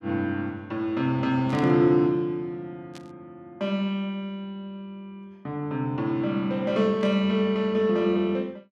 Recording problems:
burst of static; at 1.5 s, at 3 s and at 7 s; peak -13 dB vs average level

